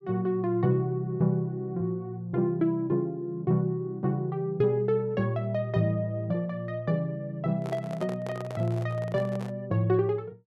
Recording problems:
microphone handling noise; from 7.5 to 9.5 s; peak -8 dB vs average level

